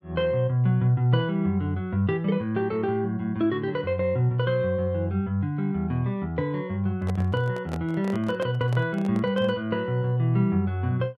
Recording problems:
handling noise; from 7 to 9.5 s; peak -6 dB vs average level

